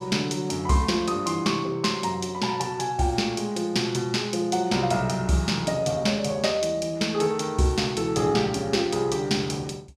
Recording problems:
none

